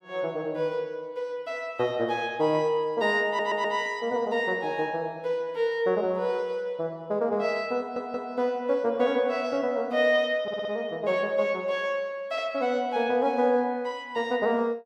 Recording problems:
audio stuttering; at 3.5 s, at 8 s and at 10 s

